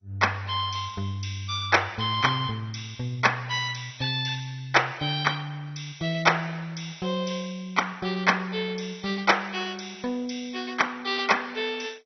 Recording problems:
codec artefacts; MP2, log-spectral distance 6 dB, nothing above 6 kHz

